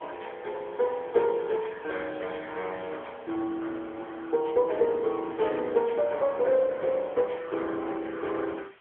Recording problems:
telephone audio; 280 Hz to 3.4 kHz, AMR-NB
background hiss; SNR 27 dB

